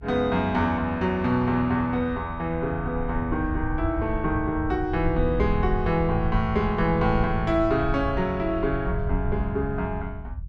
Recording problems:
low-frequency rumble; below 90 Hz, SNR 7 dB

